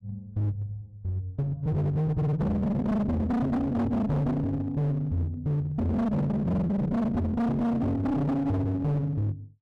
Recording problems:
distorted audio; hard clipping, uneven, signal-to-distortion ratio 6 dB

